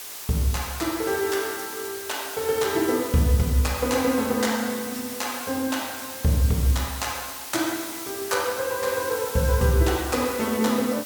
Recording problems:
hiss; slope 0 dB per octave, SNR 9 dB

